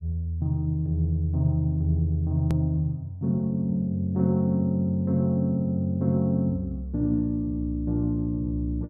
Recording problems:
edit click; at 2.5 s

